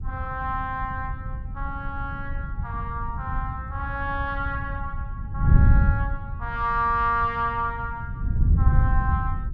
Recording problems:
wind noise; below 110 Hz, SNR -1 dB

